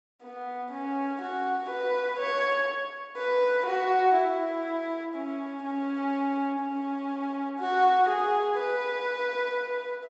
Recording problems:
treble missing; nothing above 7.7 kHz

